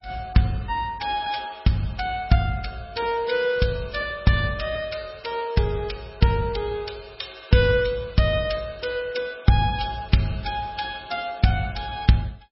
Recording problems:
lossy compression; MP3, log-spectral distance 4 dB, nothing above 5.5 kHz

